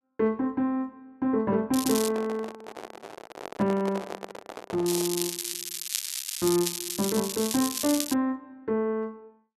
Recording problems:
crackling; at 1.5 s and from 5 to 8 s; loose cable, SNR 3 dB
handling noise; from 2 to 5 s; peak -4 dB vs average level

